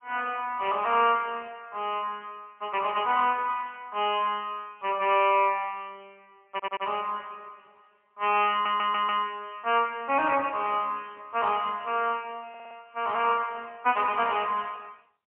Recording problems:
phone line; 260 Hz to 3.1 kHz, AMR-NB, then MP3
stutter; at 6.5 s, at 8.5 s and at 12 s

